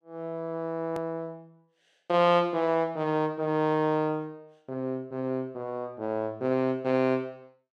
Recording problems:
edit click; at 1 s

